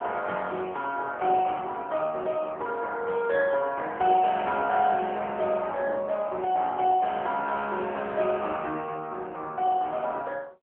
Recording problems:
telephone audio; 260 Hz to 3.4 kHz, AMR-NB

